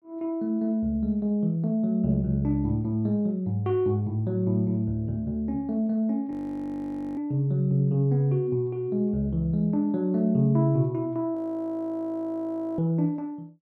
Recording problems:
frozen audio; at 6.5 s for 1 s and at 11 s for 1.5 s

